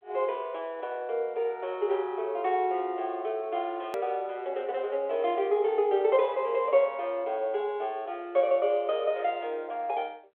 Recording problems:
telephone audio; 340 Hz to 3.5 kHz, G.726
hard cut with a click; at 4 s

